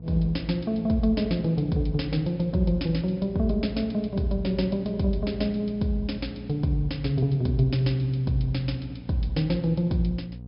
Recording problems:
treble cut off; nothing above 5.5 kHz
hum; 60 Hz, harmonics up to 540 Hz, SNR 15 dB

